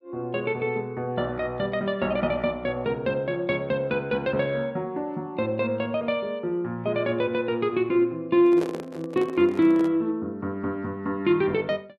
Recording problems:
microphone handling noise; from 8.5 to 10 s; peak -3 dB vs average level

